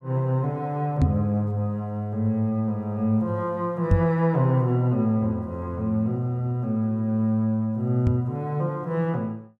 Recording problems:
knock on the microphone; at 1 s, at 4 s and at 8 s; peak +8 dB vs average level

